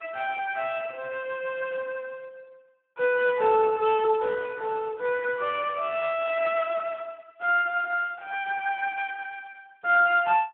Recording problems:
phone line; 260 Hz to 3.3 kHz, Speex

